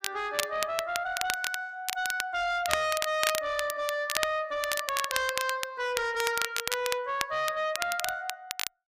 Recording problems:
distorted audio; soft clipping, signal-to-distortion ratio 8 dB
crackle; vinyl, SNR 4 dB

